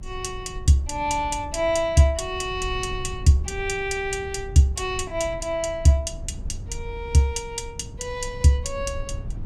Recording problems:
rumble; below 96 Hz, SNR 14 dB

